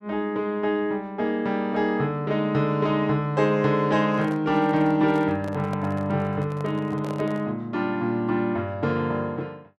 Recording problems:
microphone handling noise; from 4 to 7.5 s; peak -8 dB vs average level

